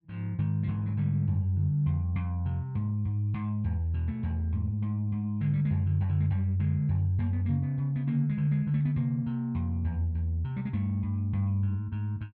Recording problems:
none

